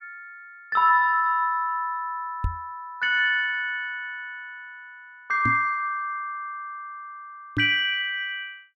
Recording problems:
microphone bump; at 2.5 s, at 5.5 s and at 7.5 s; peak 0 dB vs average level

